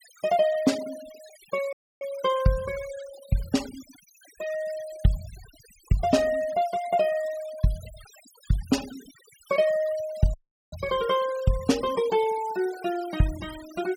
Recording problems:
noise reduction artefacts; signal-to-artefact ratio 18 dB
dropout; at 1.5 s and at 10 s

